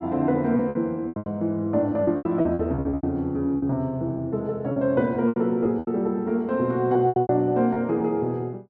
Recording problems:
lost packets; 14% of the sound replaced, filled with repeated pitch periods

